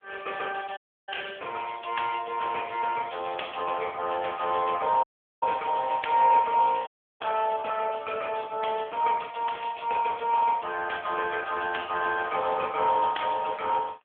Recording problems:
telephone audio; 320 Hz to 3.4 kHz, AMR-NB
dropout; at 1 s, at 5 s and at 7 s

